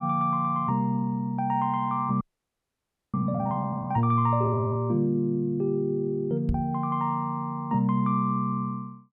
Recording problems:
frozen audio; at 2 s for 1 s
microphone bump; at 6.5 s; peak +2 dB vs average level

